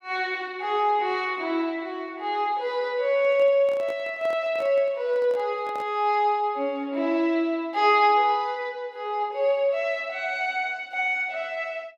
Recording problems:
handling noise; from 3 to 6 s; peak -11 dB vs average level

